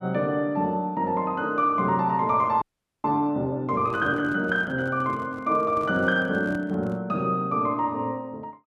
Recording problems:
frozen audio; at 2.5 s
handling noise; from 4 to 7 s; peak -10 dB vs average level

